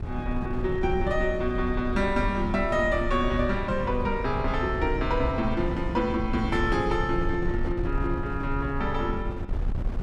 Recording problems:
wind noise; below 98 Hz, SNR 5 dB

